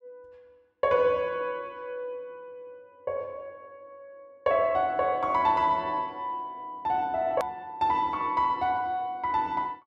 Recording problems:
click at an edit; at 7.5 s

